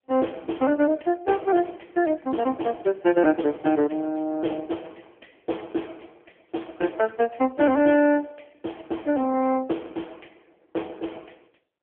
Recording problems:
telephone audio; 220 Hz to 3.3 kHz, AMR-NB

